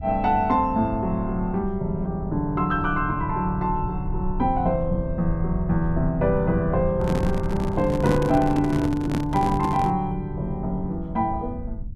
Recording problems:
low-frequency rumble; below 100 Hz, SNR 9 dB
microphone handling noise; from 7 to 10 s; peak +1 dB vs average level

